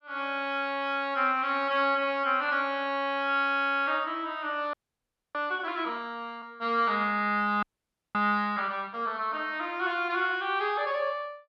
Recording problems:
frozen audio; at 4.5 s for 0.5 s and at 7.5 s for 0.5 s

